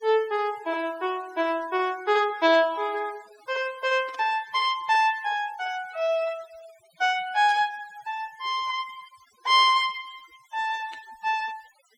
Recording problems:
denoising artefacts; signal-to-artefact ratio 22 dB
burst of static; 4 times, first at 2.5 s; peak -15 dB vs average level

